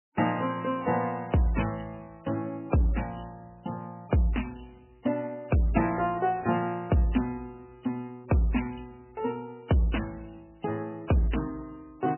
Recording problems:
lossy codec; MP3, log-spectral distance 4 dB, nothing above 3 kHz

